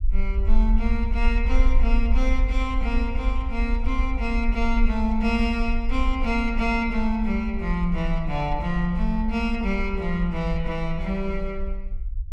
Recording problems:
low-frequency rumble; below 48 Hz, strongest tone 20 Hz, SNR 1 dB

